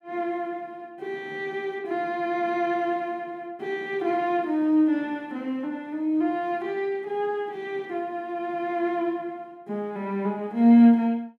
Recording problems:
none

